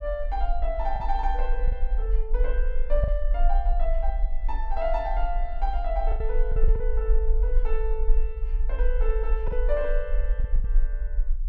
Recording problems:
low-frequency rumble; below 42 Hz, strongest tone 24 Hz, SNR -4 dB
packet loss; 4% of the sound replaced, filled with the last packet

